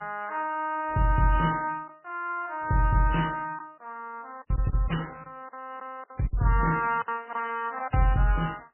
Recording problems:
codec artefacts; MP3, then MP3, log-spectral distance 3 dB, nothing above 2.5 kHz
packet loss; 6% of the sound replaced, filled with silence

